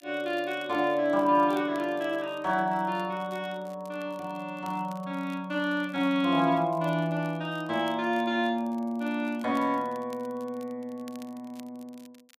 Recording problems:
crackling; vinyl, SNR 28 dB

